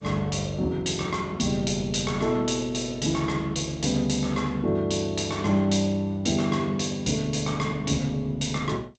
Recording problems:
lossy compression; G.722, log-spectral distance 5 dB, nothing above 7.6 kHz

